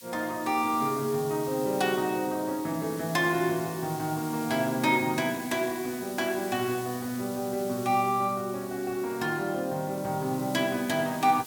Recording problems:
background hiss; slope +6 dB per octave, SNR 14 dB

